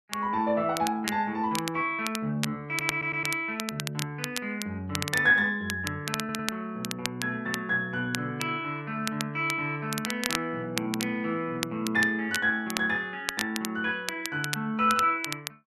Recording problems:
crackle; vinyl, SNR 8 dB
audio stuttering; at 2.5 s and at 6 s

